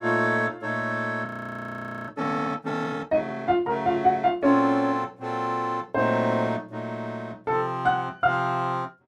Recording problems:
audio freezing; at 1.5 s for 1 s

